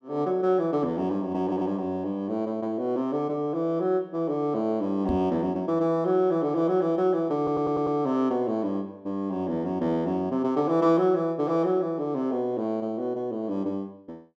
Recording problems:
stutter; at 1.5 s and at 7.5 s
knock on the microphone; at 5 s; peak +1 dB vs average level

